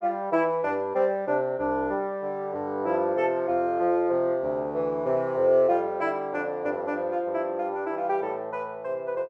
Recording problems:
none

